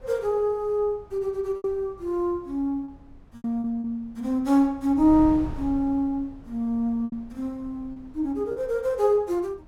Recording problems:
wind noise; below 150 Hz, SNR 19 dB
packet loss; 5% of the sound replaced, filled with repeated pitch periods

